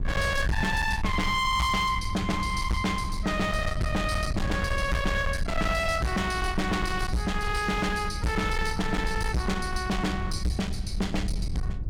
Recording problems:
distorted audio; hard clipping, uneven, signal-to-distortion ratio 6 dB
rumble; below 120 Hz, SNR 6 dB

